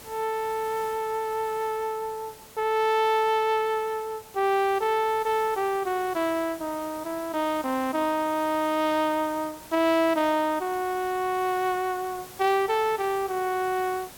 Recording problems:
hiss; slope -3 dB per octave, SNR 18 dB

